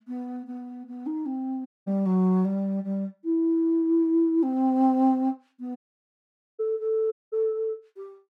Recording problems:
dropout; at 1.5 s, at 6 s for 1 s and at 7 s

